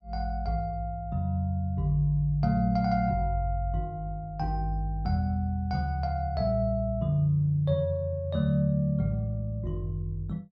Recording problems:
none

